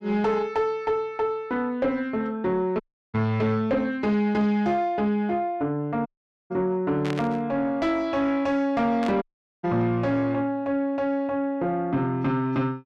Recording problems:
distorted audio; soft clipping, signal-to-distortion ratio 11 dB
dropout; at 3 s, at 6 s and at 9 s
static burst; at 7 s and at 9 s; peak -5 dB vs average level

